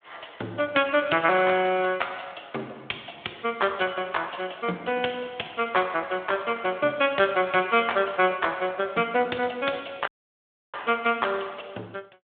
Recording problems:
telephone audio; 220 Hz to 3.4 kHz, Speex
audio cutting out; at 10 s for 0.5 s

